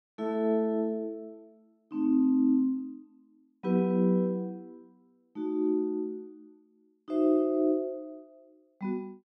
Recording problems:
none

